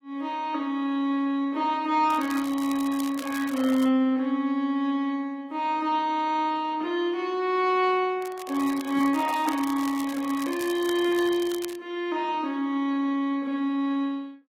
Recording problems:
codec artefacts; AAC, log-spectral distance 2 dB
crackling; from 2 to 4 s and from 8 to 12 s; loose cable, SNR 17 dB

